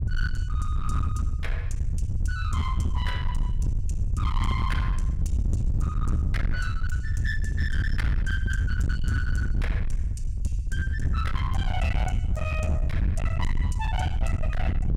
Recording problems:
distortion; hard clipping, signal-to-distortion ratio 8 dB
low-frequency rumble; below 90 Hz, SNR -3 dB

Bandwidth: 16 kHz